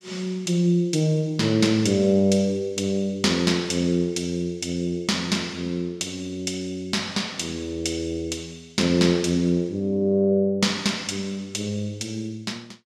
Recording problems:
none

